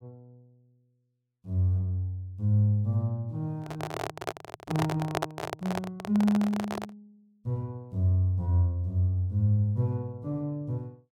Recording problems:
handling noise; from 3.5 to 7 s; peak +3 dB vs average level

